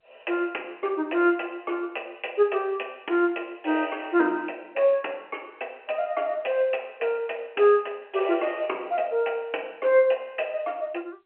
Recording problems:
phone line; 280 Hz to 3.1 kHz, G.711

